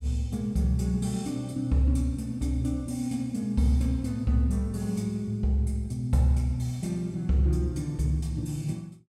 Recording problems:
none

